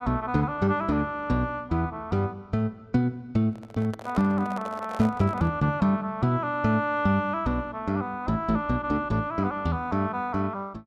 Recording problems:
handling noise; from 3.5 to 5.5 s; peak -6 dB vs average level

